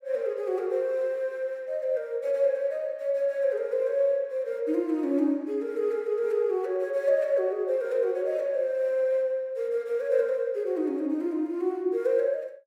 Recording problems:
none

